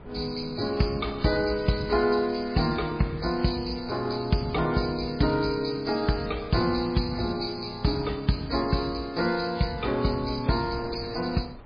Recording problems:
codec artefacts; MP3, log-spectral distance 7 dB
wind noise; below 600 Hz, SNR 20 dB

